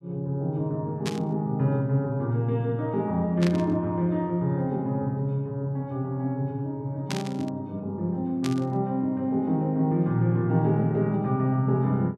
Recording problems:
static burst; 4 times, first at 1 s; peak -2 dB vs average level

